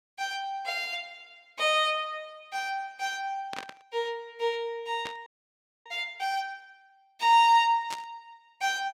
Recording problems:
burst of static; at 3.5 s, at 5 s and at 8 s; peak -5 dB vs average level
frozen audio; at 5.5 s for 0.5 s

